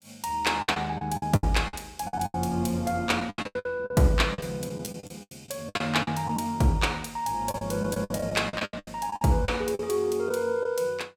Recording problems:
lost packets; 15% of the sound replaced, filled with the last packet

